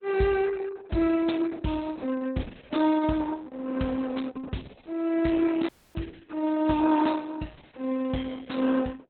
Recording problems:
lossy compression; Opus, log-spectral distance 4 dB, nothing above 4 kHz
audio cutting out; at 5.5 s

